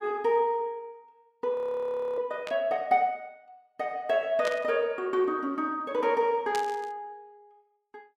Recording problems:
frozen audio; at 1.5 s for 0.5 s
static burst; at 2.5 s, at 4.5 s and at 6.5 s; peak -4 dB vs average level

